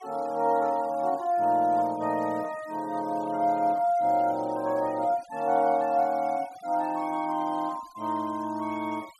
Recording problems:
noise reduction artefacts; signal-to-artefact ratio 25 dB

